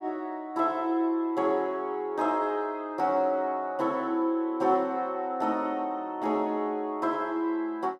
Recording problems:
none

